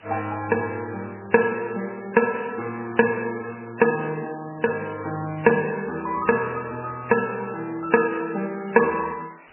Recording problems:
lossy compression; MP3, log-spectral distance 15 dB, nothing above 2.7 kHz
hiss; SNR 24 dB

